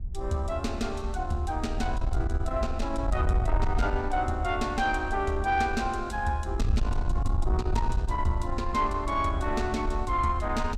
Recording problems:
distortion; soft clipping, signal-to-distortion ratio 12 dB
wind noise; below 76 Hz, SNR 3 dB

